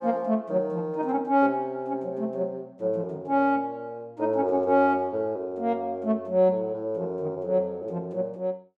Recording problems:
none

